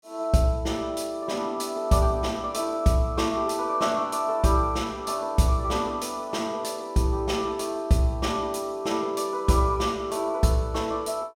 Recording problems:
none

